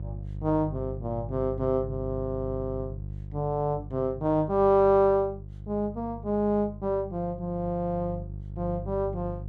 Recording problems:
hum; 50 Hz, harmonics up to 350 Hz, SNR 11 dB

